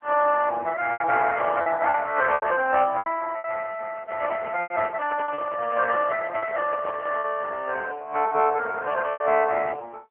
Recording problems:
phone line; 370 Hz to 3.2 kHz, AMR-NB
lost packets; 7% of the sound replaced, filled with repeated pitch periods
microphone handling noise; from 4 to 7.5 s; peak -8 dB vs average level

